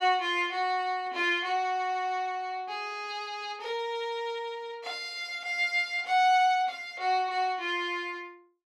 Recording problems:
none

